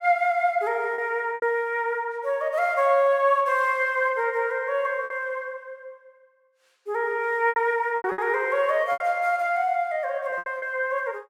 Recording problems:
lost packets; 6% of the sound replaced, filled with repeated pitch periods

